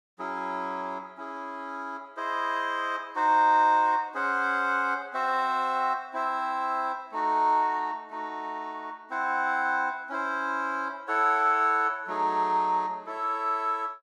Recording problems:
none

